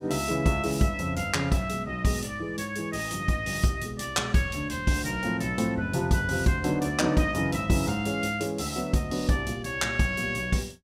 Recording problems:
none

